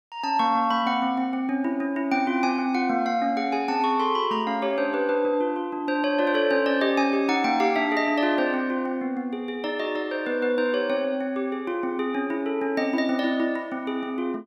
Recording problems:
none

